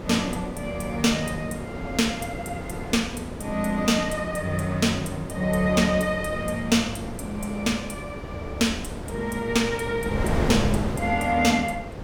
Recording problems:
wind on the microphone; below 540 Hz, SNR 8 dB

